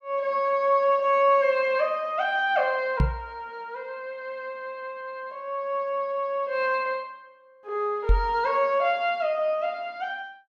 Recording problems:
knock on the microphone; at 3 s and at 8 s; peak +7 dB vs average level

